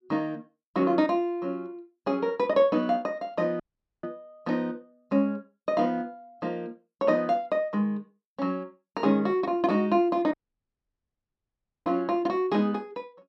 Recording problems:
audio cutting out; at 3.5 s and at 10 s for 1.5 s

